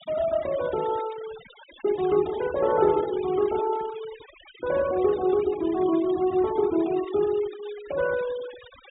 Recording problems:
treble cut off; nothing above 4 kHz
noise reduction artefacts; signal-to-artefact ratio 18 dB

